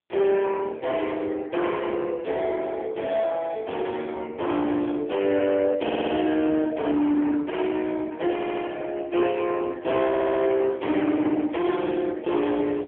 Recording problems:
phone line; 240 Hz to 3.3 kHz, AMR-NB
distortion; hard clipping, signal-to-distortion ratio 10 dB
stutter; at 6 s, at 8.5 s and at 10 s

